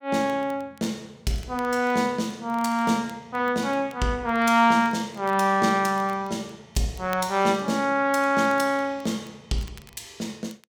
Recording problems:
crackling; vinyl, SNR 28 dB

